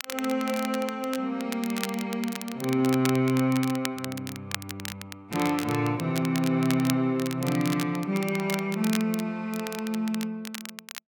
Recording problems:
crackling; vinyl, SNR 10 dB

